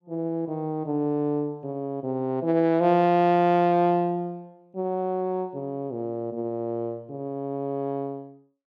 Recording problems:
none

